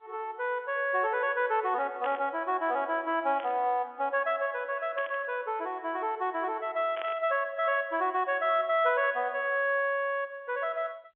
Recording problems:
telephone audio; 300 Hz to 3.4 kHz, G.711
burst of static; 4 times, first at 2 s; peak -7 dB vs average level

